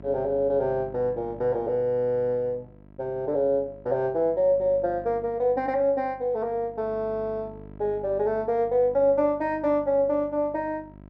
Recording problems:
mains hum; 50 Hz, harmonics up to 1.3 kHz, SNR 21 dB

